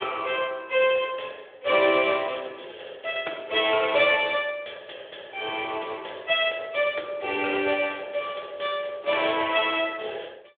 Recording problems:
phone line; 300 Hz to 3.5 kHz, Speex

